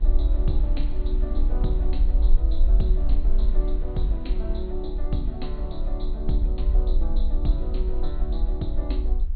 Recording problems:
low-pass filter; nothing above 4.4 kHz
hum; 50 Hz, harmonics up to 500 Hz, SNR 19 dB
low-frequency rumble; below 48 Hz, SNR -7 dB
wind on the microphone; below 250 Hz, SNR 13 dB

